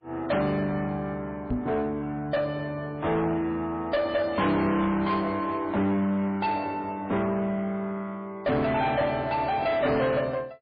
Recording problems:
codec artefacts; MP3, log-spectral distance 2 dB, nothing above 4.5 kHz
distorted audio; soft clipping, signal-to-distortion ratio 8 dB
knock on the microphone; at 1.5 s; peak +2 dB vs average level

